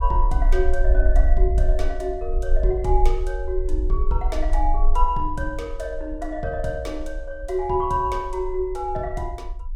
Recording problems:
low-frequency rumble; below 46 Hz, strongest tone 22 Hz, SNR -2 dB

